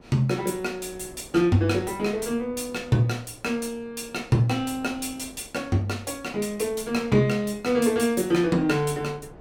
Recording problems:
wind noise; below 540 Hz, SNR 23 dB

